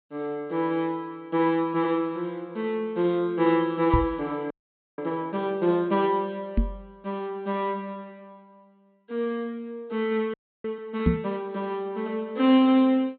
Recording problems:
treble cut off; nothing above 4.2 kHz
microphone thump; at 4 s, at 6.5 s and at 11 s; peak +8 dB vs average level
frozen audio; at 4.5 s and at 10 s

